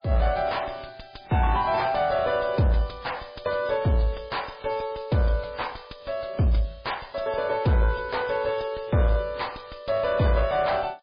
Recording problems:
lossy codec; MP3, log-spectral distance 6 dB
distortion; soft clipping, signal-to-distortion ratio 10 dB

